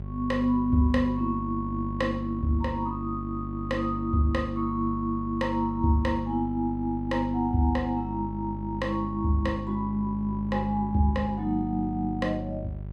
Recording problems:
hum; 50 Hz, harmonics up to 600 Hz, SNR 9 dB

